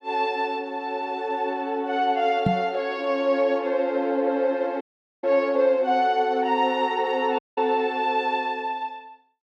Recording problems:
microphone thump; at 2.5 s; peak +4 dB vs average level
audio cutting out; at 5 s and at 7.5 s

